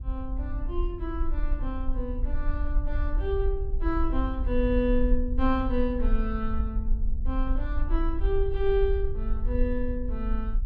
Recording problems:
rumble; below 50 Hz, SNR 0 dB

